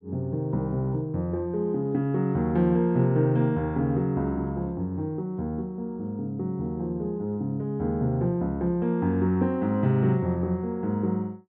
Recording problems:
none

